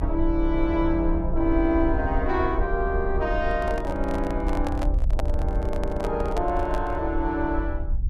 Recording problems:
rumble; below 68 Hz, SNR 4 dB
handling noise; from 3.5 to 7 s; peak -1 dB vs average level

